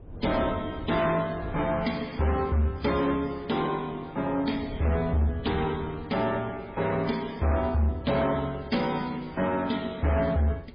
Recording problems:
lossy compression; MP3, then MP3, log-spectral distance 4 dB
distorted audio; hard clipping, signal-to-distortion ratio 11 dB
wind noise; below 290 Hz, SNR 17 dB

